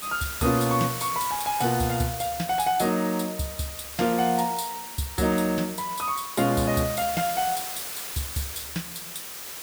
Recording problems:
background hiss; slope 0 dB per octave, SNR 7 dB

